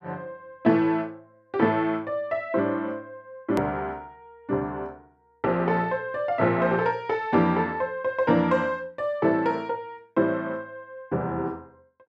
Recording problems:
edit click; at 3.5 s

